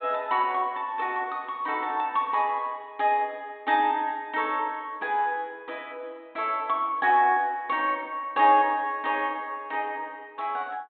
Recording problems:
treble missing; nothing above 4 kHz

